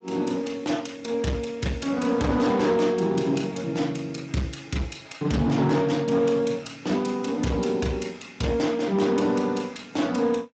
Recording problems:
codec artefacts; Speex, log-spectral distance 4 dB, nothing above 7.6 kHz
distorted audio; hard clipping, signal-to-distortion ratio 12 dB

